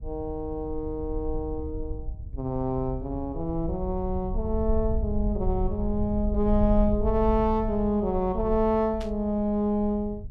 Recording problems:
low-frequency rumble; below 66 Hz, SNR 7 dB
static burst; at 9 s; peak -11 dB vs average level

